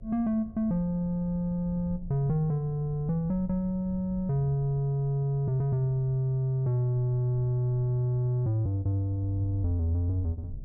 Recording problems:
hum; 60 Hz, harmonics up to 660 Hz, SNR 34 dB
low-frequency rumble; below 110 Hz, SNR 18 dB

